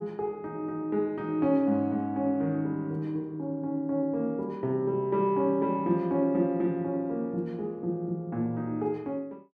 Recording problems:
none

